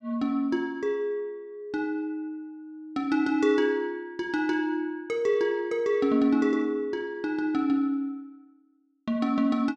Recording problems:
none

